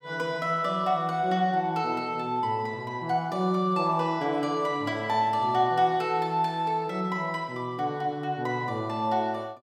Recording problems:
none

